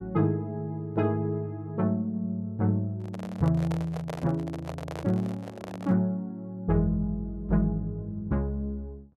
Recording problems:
handling noise; from 3 to 6 s; peak -4 dB vs average level

